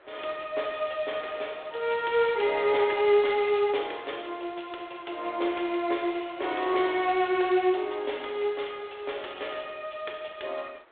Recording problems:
telephone audio; 300 Hz to 3.6 kHz, G.726
wind on the microphone; below 1.7 kHz, SNR 25 dB

